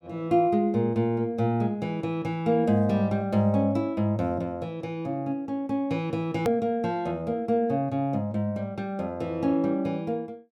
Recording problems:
edit click; at 6.5 s

